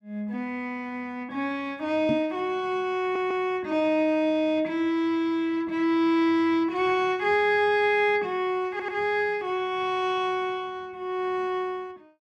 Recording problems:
knock on the microphone; at 2 s; peak +1 dB vs average level
audio stuttering; at 3 s and at 8.5 s

